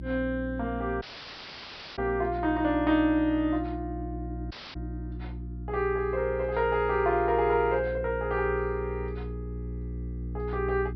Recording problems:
treble missing; nothing above 5.5 kHz
hum; 60 Hz, harmonics up to 360 Hz, SNR 10 dB
audio cutting out; at 1 s for 1 s and at 4.5 s

